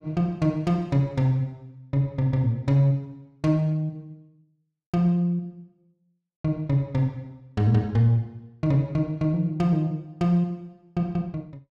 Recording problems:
none

